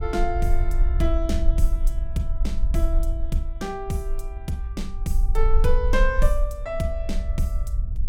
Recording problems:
rumble; below 44 Hz, SNR -3 dB

